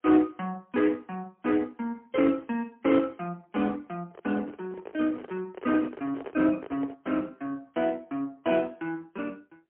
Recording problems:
phone line; 220 Hz to 3.2 kHz, AMR-NB, then MP3
microphone handling noise; from 4 to 7 s; peak -1 dB vs average level

